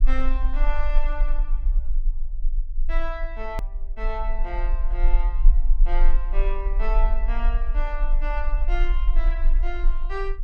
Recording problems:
low-frequency rumble; below 34 Hz, strongest tone 22 Hz, SNR -8 dB
click at an edit; at 3.5 s

